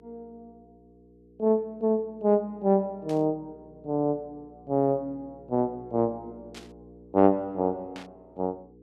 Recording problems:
hum; 60 Hz, harmonics up to 480 Hz, SNR 25 dB
static burst; at 3 s, at 6.5 s and at 8 s; peak -13 dB vs average level

